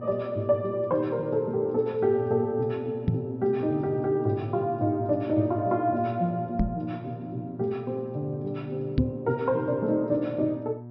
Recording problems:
low-pass filter; nothing above 5.5 kHz
hum; 60 Hz, harmonics up to 960 Hz, SNR 13 dB
knock on the microphone; at 3 s, at 6.5 s and at 9 s; peak +7 dB vs average level

